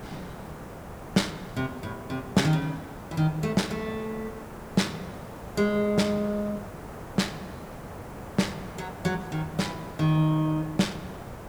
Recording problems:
background hiss; SNR 12 dB

